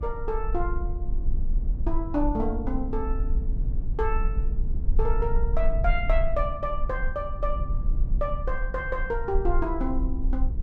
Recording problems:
rumble; below 48 Hz, SNR -1 dB

